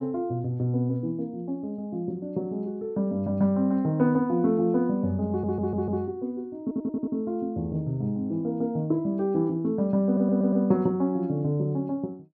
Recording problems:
stutter; at 5.5 s, at 6.5 s and at 10 s

